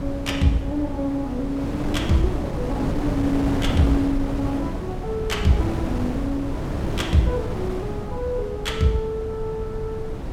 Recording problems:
rumble; below 98 Hz, SNR 12 dB
wind on the microphone; below 410 Hz, SNR 4 dB

